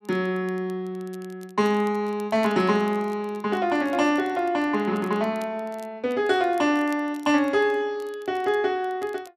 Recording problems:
crackle; vinyl, SNR 29 dB

